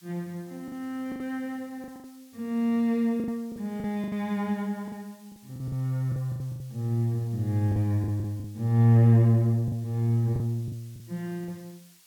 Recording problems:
background hiss; slope +3 dB per octave, SNR 29 dB
packet loss; 10% of the sound replaced, filled with the last packet

